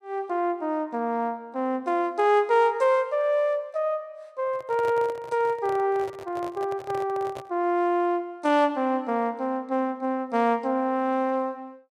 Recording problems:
microphone handling noise; from 4.5 to 7.5 s; peak -8 dB vs average level

